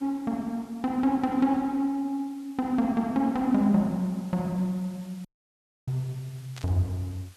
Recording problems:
background hiss; slope 0 dB per octave, SNR 27 dB
dropout; at 5.5 s for 0.5 s
burst of static; at 6.5 s; peak -11 dB vs average level

